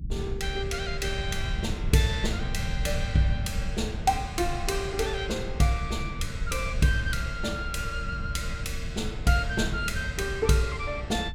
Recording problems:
low-frequency rumble; below 100 Hz, SNR 5 dB

